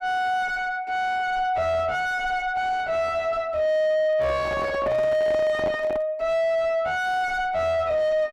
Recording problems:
distorted audio; soft clipping, signal-to-distortion ratio 5 dB
handling noise; from 4 to 6 s; peak 0 dB vs average level

